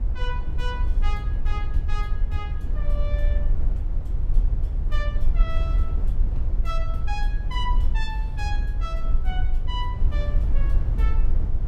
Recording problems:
rumble; below 50 Hz, strongest tone 20 Hz, SNR -10 dB

